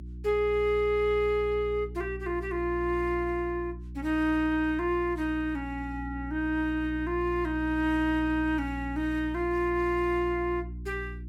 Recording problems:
electrical hum; 60 Hz, harmonics up to 360 Hz, SNR 11 dB

